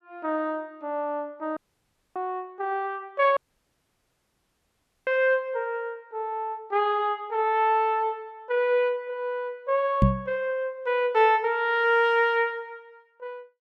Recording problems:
dropout; at 1.5 s for 0.5 s and at 3.5 s for 1.5 s
microphone bump; at 10 s; peak +9 dB vs average level

